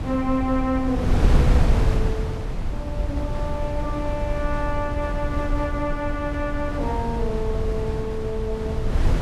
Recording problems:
wind noise; below 120 Hz, SNR -2 dB

